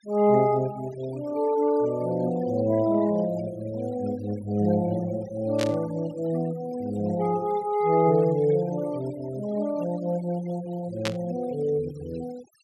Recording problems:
noise reduction artefacts; signal-to-artefact ratio 20 dB
burst of static; at 5.5 s and at 11 s; peak 0 dB vs average level

